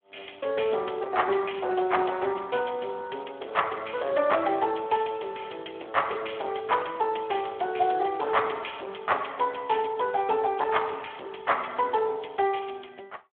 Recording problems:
telephone audio; 300 Hz to 3.5 kHz, Speex
distortion; hard clipping, signal-to-distortion ratio 11 dB

